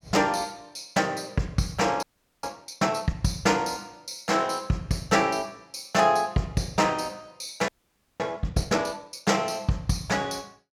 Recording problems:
audio freezing; at 2 s and at 7.5 s for 0.5 s

